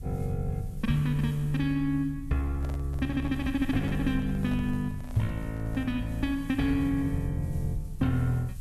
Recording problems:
hiss; slope +1 dB per octave, SNR 27 dB
low-frequency rumble; below 80 Hz, SNR 12 dB
handling noise; from 2.5 to 6 s; peak -12 dB vs average level

